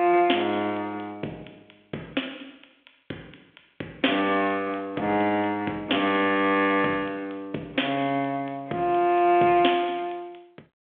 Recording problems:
telephone audio; 240 Hz to 3.4 kHz, G.726

